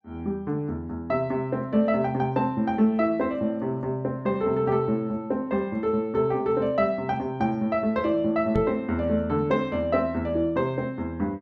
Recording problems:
knock on the microphone; at 8.5 s; peak +1 dB vs average level

